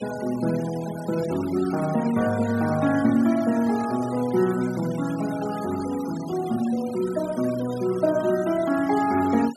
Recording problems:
denoising artefacts; signal-to-artefact ratio 17 dB

